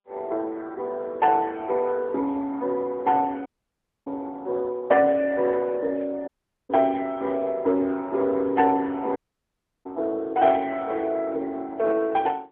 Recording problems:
phone line; 260 Hz to 3.6 kHz, AMR-NB
dropout; at 3.5 s for 0.5 s, at 6.5 s and at 9 s for 0.5 s

